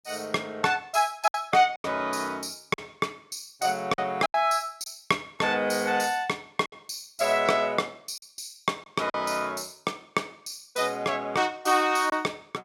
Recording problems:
packet loss; 5% of the sound replaced, filled with silence

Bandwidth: 16.5 kHz